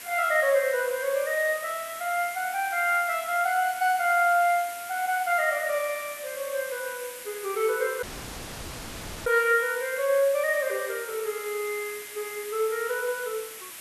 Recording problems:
hiss; SNR 13 dB
dropout; at 8 s for 1 s

